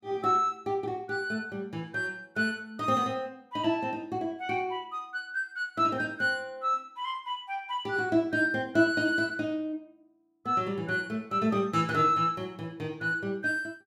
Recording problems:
none

